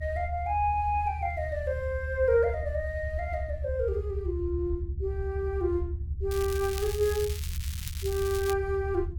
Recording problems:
rumble; below 78 Hz, strongest tone 76 Hz, SNR 5 dB
crackle; from 6.5 to 8.5 s; loose cable, SNR 10 dB

